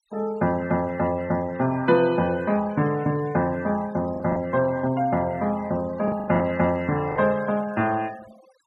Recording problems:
denoising artefacts; signal-to-artefact ratio 22 dB
packet loss; 3% of the sound replaced, filled with the last packet

